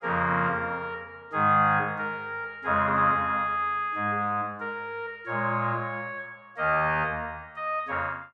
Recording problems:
none

